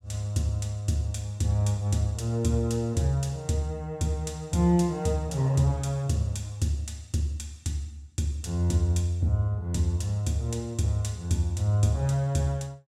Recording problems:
none

